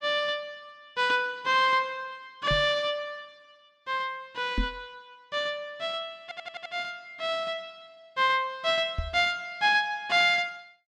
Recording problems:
microphone thump; at 2.5 s, at 4.5 s and at 9 s; peak +1 dB vs average level
audio stuttering; at 6 s

